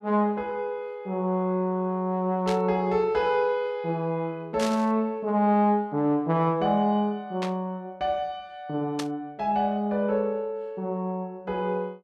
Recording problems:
static burst; 4 times, first at 2.5 s; peak -3 dB vs average level

